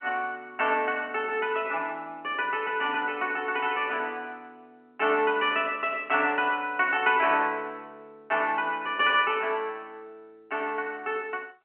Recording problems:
phone line; 260 Hz to 3.2 kHz, G.711

